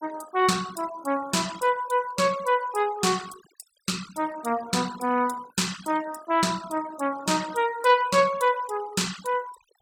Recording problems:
denoising artefacts; signal-to-artefact ratio 17 dB

